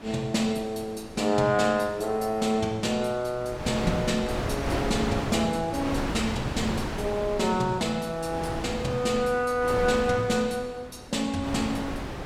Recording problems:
wind noise; below 1 kHz, SNR 6 dB

